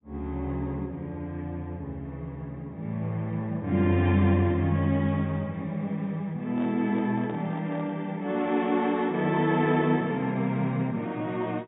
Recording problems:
treble cut off; nothing above 3.7 kHz
microphone handling noise; from 6.5 to 8 s; peak -10 dB vs average level

